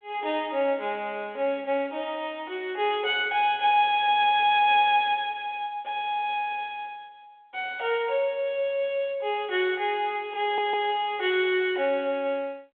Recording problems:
phone line; 300 Hz to 3.5 kHz, G.726
stutter; at 10 s

